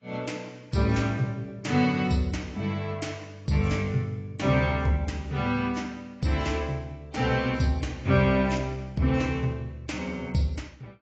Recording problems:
codec artefacts; AAC, log-spectral distance 3 dB, nothing above 7.6 kHz

